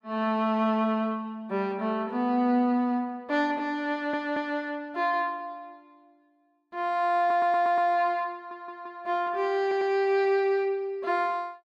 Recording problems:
audio stuttering; 4 times, first at 4 s

